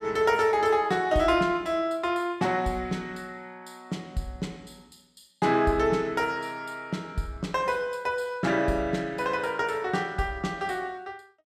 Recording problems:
none

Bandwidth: 14.5 kHz